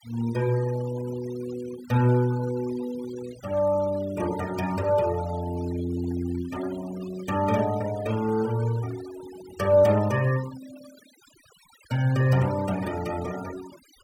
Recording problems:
denoising artefacts; signal-to-artefact ratio 17 dB

